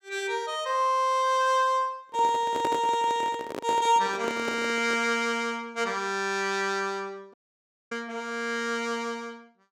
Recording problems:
microphone handling noise; from 2 to 5 s; peak -1 dB vs average level
audio cutting out; at 7.5 s for 0.5 s

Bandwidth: 17 kHz